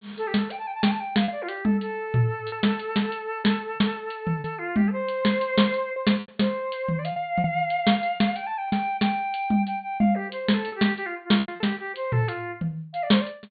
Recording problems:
low-pass filter; nothing above 4.4 kHz
lost packets; 5% of the sound replaced, filled with repeated pitch periods

